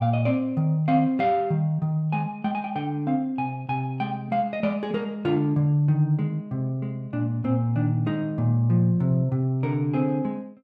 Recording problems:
none

